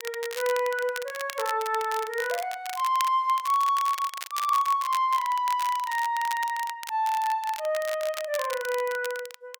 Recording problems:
crackling; vinyl, SNR 12 dB

